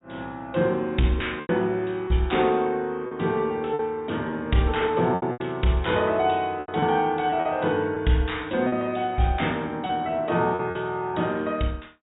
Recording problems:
low-pass filter; nothing above 4 kHz
lost packets; 6% of the sound replaced, filled with repeated pitch periods

